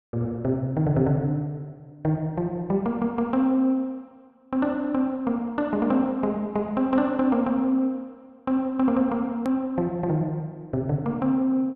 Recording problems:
click at an edit; at 9.5 s

